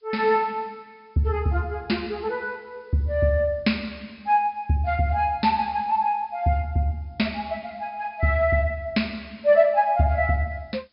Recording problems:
low-pass filter; nothing above 5.5 kHz
background hiss; SNR 44 dB

